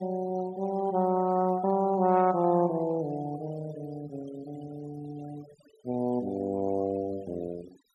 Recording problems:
noise reduction artefacts; signal-to-artefact ratio 21 dB

